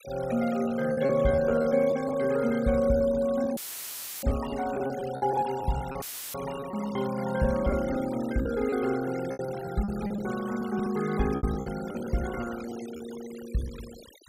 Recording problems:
noise reduction artefacts; signal-to-artefact ratio 17 dB
lost packets; 10% of the sound replaced, filled with repeated pitch periods
dropout; at 3.5 s for 0.5 s and at 6 s; filled with static

